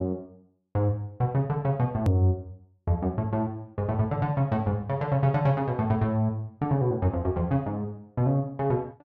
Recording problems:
hard cut with a click; at 2 s

